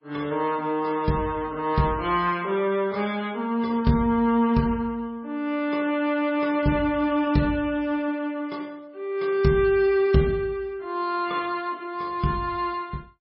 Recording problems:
lossy compression; MP3, log-spectral distance 2 dB, nothing above 4.8 kHz

